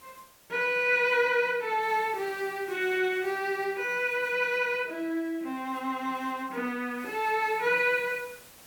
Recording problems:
hiss; slope -2 dB per octave, SNR 24 dB

